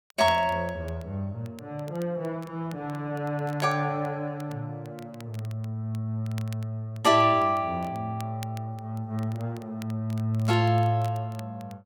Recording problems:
crackle; vinyl, SNR 24 dB

